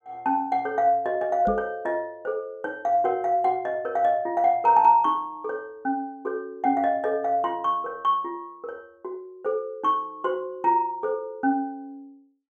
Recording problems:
microphone thump; at 1.5 s; peak -2 dB vs average level

